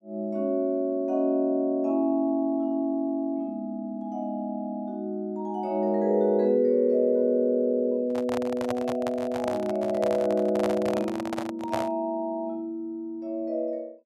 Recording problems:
handling noise; from 8 to 12 s; peak 0 dB vs average level

